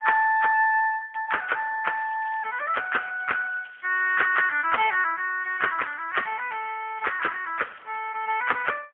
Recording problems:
telephone audio; 340 Hz to 3 kHz, AMR-NB, then MP3
crackling; from 2 to 4.5 s and from 6 to 8.5 s; loose cable, SNR 27 dB

